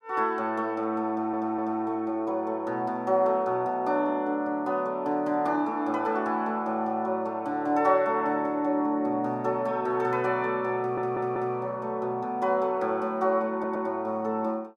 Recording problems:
stutter; at 1 s, at 11 s and at 14 s

